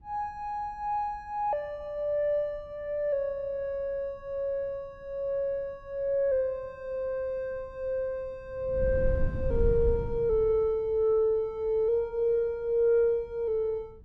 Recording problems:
wind on the microphone; below 92 Hz, SNR 6 dB

